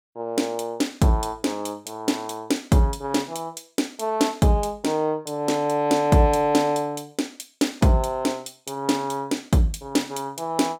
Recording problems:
none

